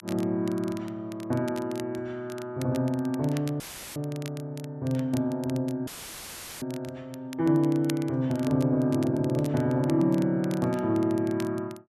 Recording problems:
crackling; vinyl, SNR 20 dB
dropout; at 3.5 s and at 6 s for 1 s; filled with static

